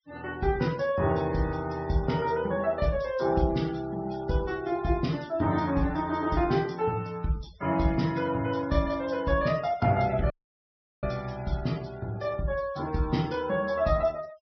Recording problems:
low-pass filter; nothing above 5.5 kHz
noise reduction artefacts; signal-to-artefact ratio 22 dB
dropout; at 10 s for 0.5 s

